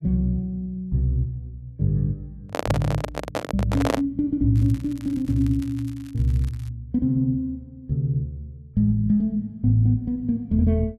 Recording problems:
handling noise; from 2.5 to 4 s; peak +4 dB vs average level
crackle; from 4.5 to 6.5 s; loose cable, SNR 26 dB

